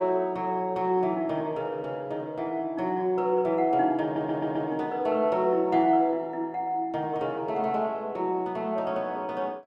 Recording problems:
audio stuttering; at 4 s

